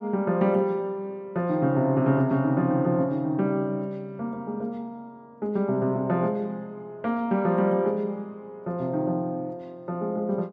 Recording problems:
none

